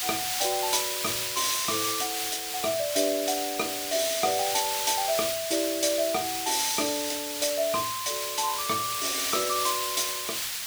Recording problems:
background hiss; slope +4 dB per octave, SNR 1 dB

